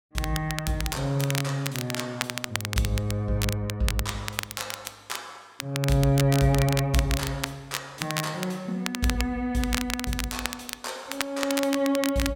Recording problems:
crackle; vinyl, SNR 6 dB

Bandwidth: 16.5 kHz